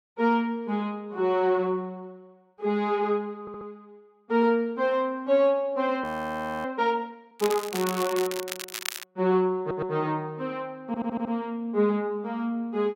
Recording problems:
audio stuttering; at 3.5 s, at 9.5 s and at 11 s
audio freezing; at 6 s for 0.5 s
crackle; from 7.5 to 9 s; loose cable, SNR 8 dB

